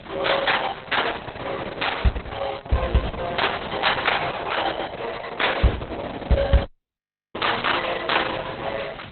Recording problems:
lossy compression; Opus, log-spectral distance 11 dB, nothing above 4 kHz
hiss; SNR 15 dB
dropout; at 6.5 s for 0.5 s

